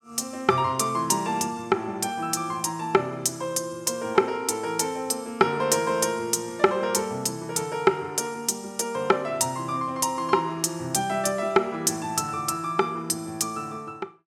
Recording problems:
none

